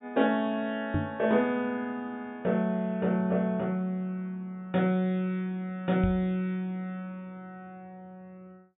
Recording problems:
treble missing; nothing above 4 kHz
knock on the microphone; at 1 s and at 6 s; peak +4 dB vs average level

